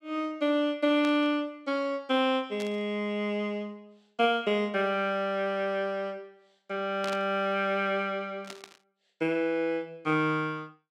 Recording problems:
burst of static; 4 times, first at 1 s; peak -6 dB vs average level

